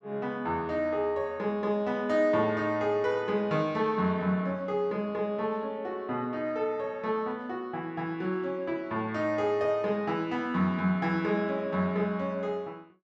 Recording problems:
none

